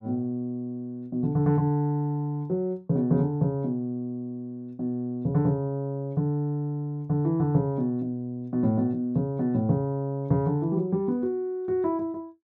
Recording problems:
none

